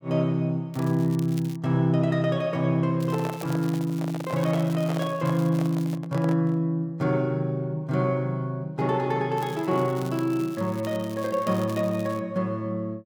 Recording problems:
crackle; at 0.5 s, from 3 to 6 s and from 9.5 to 12 s; loose cable, SNR 21 dB
microphone handling noise; from 3 to 6.5 s; peak -4 dB vs average level

